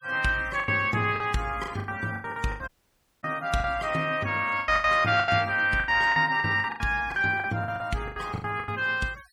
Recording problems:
denoising artefacts; signal-to-artefact ratio 24 dB
lost packets; 17% of the sound replaced, filled with the last packet
dropout; at 2.5 s for 0.5 s

